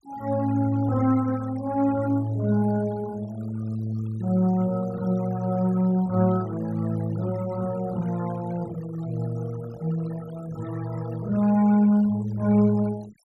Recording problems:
noise reduction artefacts; signal-to-artefact ratio 22 dB

